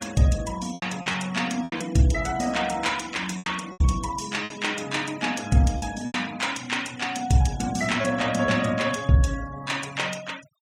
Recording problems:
denoising artefacts; signal-to-artefact ratio 16 dB
lost packets; 6% of the sound replaced, filled with repeated pitch periods

